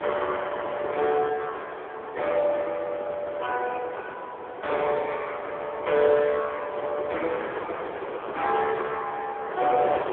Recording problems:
telephone audio; 340 Hz to 3.5 kHz, AMR-NB
wind noise; below 1 kHz, SNR 9 dB

